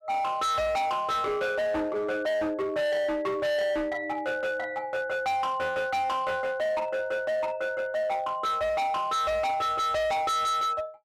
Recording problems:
distorted audio; hard clipping, signal-to-distortion ratio 6 dB

